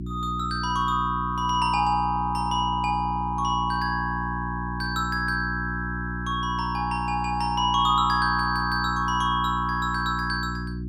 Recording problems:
hum; 60 Hz, harmonics up to 360 Hz, SNR 7 dB

